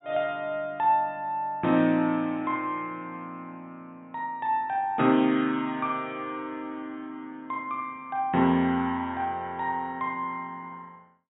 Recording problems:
low-pass filter; nothing above 4 kHz

